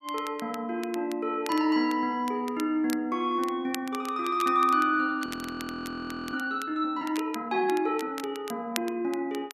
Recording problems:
crackle; vinyl, SNR 16 dB
audio freezing; at 5.5 s for 1 s

